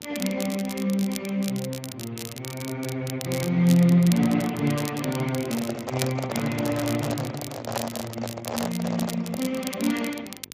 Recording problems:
codec artefacts; Speex, log-spectral distance 3 dB
hum; 50 Hz, harmonics up to 900 Hz, SNR 27 dB
crackle; vinyl, SNR 11 dB
microphone handling noise; from 5.5 to 9.5 s; peak +1 dB vs average level

